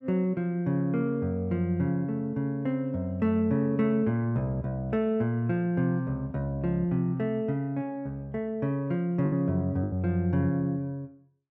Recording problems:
packet loss; 1.3% of the sound replaced, filled with the last packet

